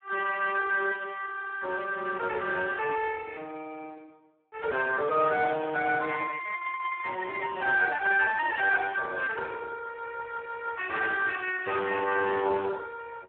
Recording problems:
phone line; 320 Hz to 2.1 kHz, Speex

